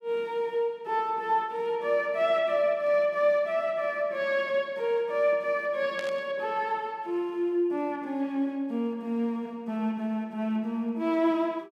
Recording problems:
burst of static; at 6 s; peak -8 dB vs average level

